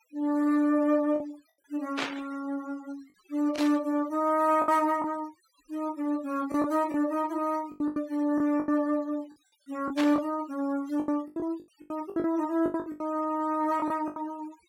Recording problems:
denoising artefacts; signal-to-artefact ratio 21 dB
lost packets; 9% of the sound replaced, filled with the last packet
burst of static; at 2 s, at 3.5 s and at 10 s; peak +1 dB vs average level

